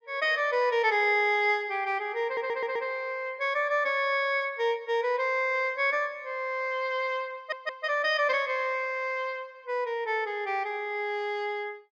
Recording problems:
stutter; at 2.5 s and at 7.5 s

